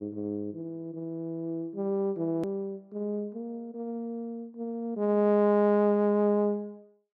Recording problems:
click at an edit; at 2.5 s

